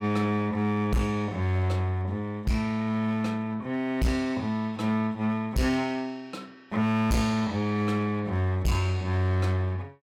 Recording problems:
distortion; hard clipping, uneven, signal-to-distortion ratio 11 dB

